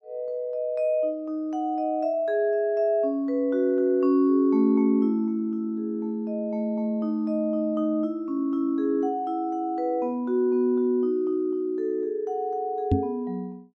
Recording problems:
knock on the microphone; at 13 s; peak +6 dB vs average level

